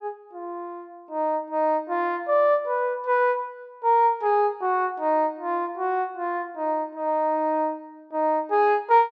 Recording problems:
none

